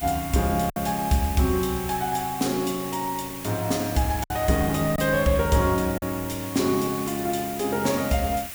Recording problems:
background hiss; SNR 10 dB
wind on the microphone; below 570 Hz, SNR 21 dB
packet loss; 2% of the sound replaced, filled with silence

